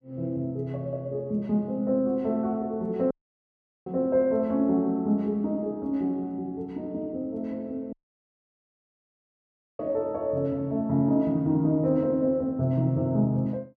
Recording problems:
dropout; at 3 s for 1 s and at 8 s for 2 s

